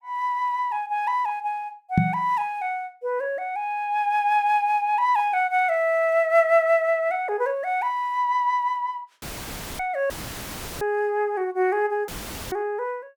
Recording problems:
microphone bump; at 2 s; peak +7 dB vs average level
dropout; at 9 s for 0.5 s, at 10 s for 0.5 s and at 12 s; filled with static

